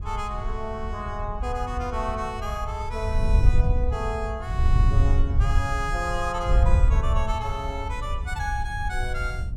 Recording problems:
wind on the microphone; below 80 Hz, SNR -4 dB

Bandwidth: 16 kHz